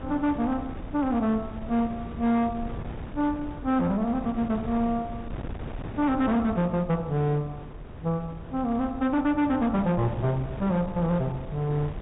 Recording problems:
low-pass filter; nothing above 4 kHz
distortion; hard clipping, uneven, signal-to-distortion ratio 12 dB
wind on the microphone; below 350 Hz, SNR 12 dB

